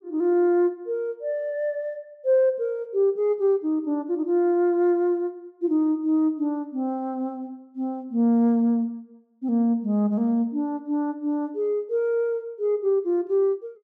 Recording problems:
none

